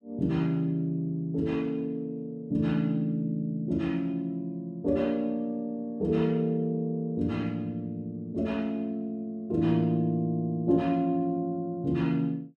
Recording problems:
none

